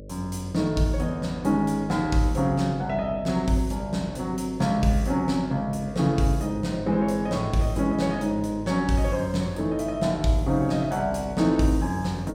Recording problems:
mains hum; 50 Hz, harmonics up to 600 Hz, SNR 15 dB

